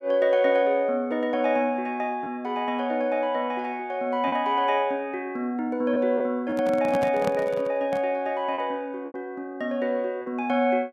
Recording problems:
lost packets; 3% of the sound replaced, filled with repeated pitch periods
handling noise; from 6.5 to 8 s; peak -1 dB vs average level

